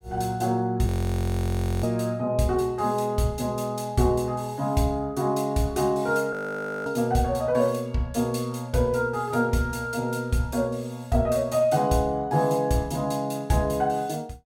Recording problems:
frozen audio; at 1 s for 1 s and at 6.5 s for 0.5 s

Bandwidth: 17 kHz